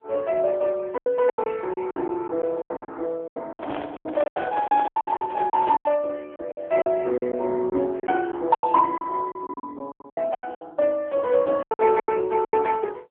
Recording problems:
phone line; 260 Hz to 2.6 kHz, AMR-NB
packet loss; 17% of the sound replaced, filled with silence
handling noise; from 3.5 to 6 s; peak -2 dB vs average level

